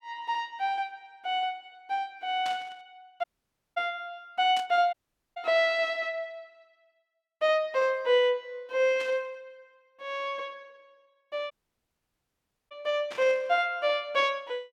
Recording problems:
burst of static; 4 times, first at 2.5 s; peak -7 dB vs average level
audio cutting out; at 3 s for 0.5 s, at 5 s and at 12 s for 1 s

